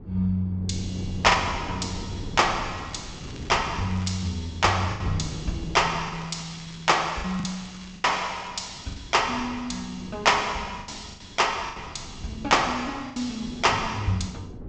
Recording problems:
treble cut off; nothing above 8 kHz
wind noise; below 270 Hz, SNR 14 dB
packet loss; 5% of the sound replaced, filled with the last packet
crackle; from 2.5 to 4.5 s and from 6 to 8.5 s; loose cable, SNR 22 dB

